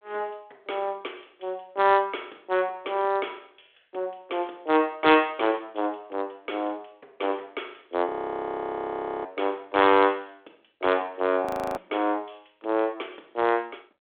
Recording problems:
telephone audio; 240 Hz to 3.6 kHz, G.726
frozen audio; at 8 s for 1 s and at 11 s

